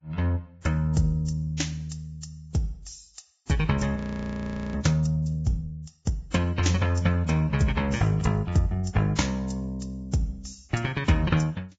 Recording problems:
lossy compression; Vorbis, log-spectral distance 3 dB, nothing above 7.6 kHz
audio freezing; at 4 s for 1 s

